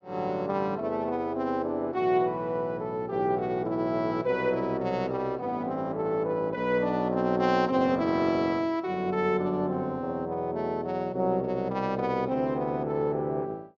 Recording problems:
treble cut off; nothing above 7.3 kHz

